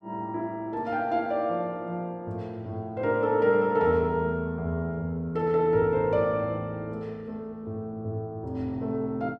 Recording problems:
none

